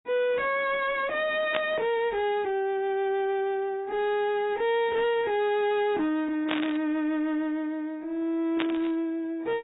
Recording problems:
lossy compression; AAC, log-spectral distance 2 dB, nothing above 3.4 kHz
distorted audio; soft clipping, signal-to-distortion ratio 9 dB
static burst; at 1.5 s, at 6.5 s and at 8.5 s; peak +2 dB vs average level

